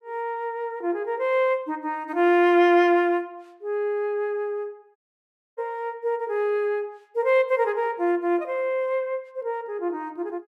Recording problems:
audio cutting out; at 5 s for 0.5 s

